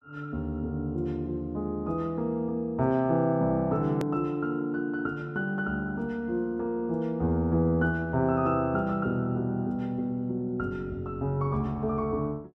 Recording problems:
edit click; at 4 s

